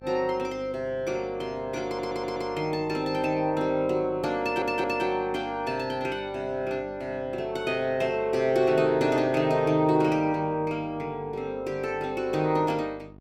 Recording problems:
hum; 50 Hz, harmonics up to 1.1 kHz, SNR 21 dB
audio stuttering; at 2 s and at 4.5 s

